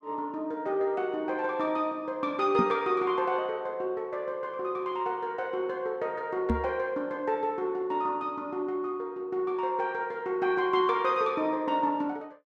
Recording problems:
microphone bump; at 2.5 s and at 6.5 s; peak +5 dB vs average level

